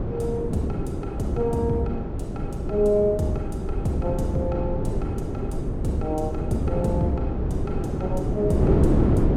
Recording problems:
hum; 60 Hz, harmonics up to 600 Hz, SNR 23 dB
rumble; below 84 Hz, SNR 11 dB
wind noise; below 370 Hz, SNR 0 dB

